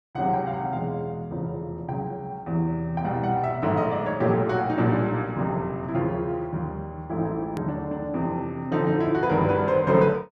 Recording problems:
click at an edit; at 7.5 s

